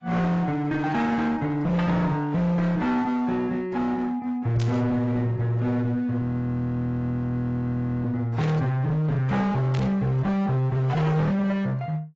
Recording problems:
lossy codec; AAC, then AAC, log-spectral distance 2 dB, nothing above 7.3 kHz
distorted audio; hard clipping, uneven, signal-to-distortion ratio 6 dB
static burst; at 4.5 s, at 8.5 s and at 9.5 s; peak -9 dB vs average level
audio freezing; at 6 s for 2 s

